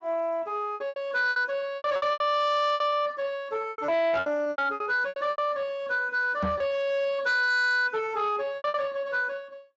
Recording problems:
lossy codec; Speex, log-spectral distance 2 dB
distortion; soft clipping, signal-to-distortion ratio 10 dB
packet loss; 12% of the sound replaced, filled with repeated pitch periods
microphone thump; at 6.5 s; peak +1 dB vs average level

